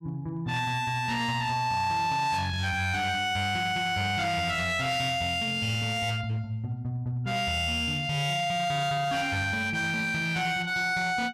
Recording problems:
distorted audio; hard clipping, signal-to-distortion ratio 10 dB

